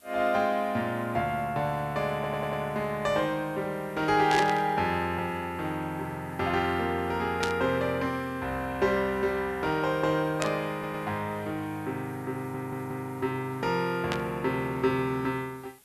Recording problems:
background hiss; slope -1 dB per octave, SNR 27 dB
audio stuttering; at 2 s, at 11 s and at 12 s
burst of static; 4 times, first at 4.5 s; peak +2 dB vs average level

